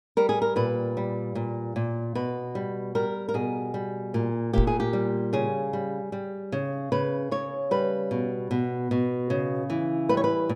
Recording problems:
microphone thump; at 4.5 s; peak +7 dB vs average level

